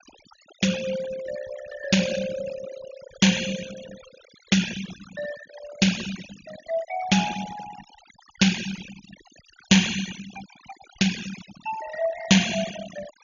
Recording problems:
low-pass filter; nothing above 7 kHz
noise reduction artefacts; signal-to-artefact ratio 12 dB

